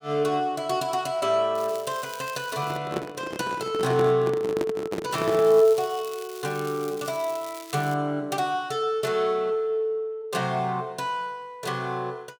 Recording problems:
crackling; from 1.5 to 3 s and from 5 to 8 s; loose cable, SNR 17 dB
handling noise; from 2.5 to 5.5 s; peak +1 dB vs average level

